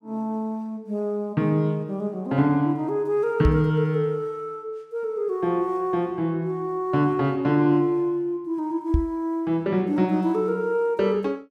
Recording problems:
microphone bump; at 3.5 s and at 9 s; peak +6 dB vs average level

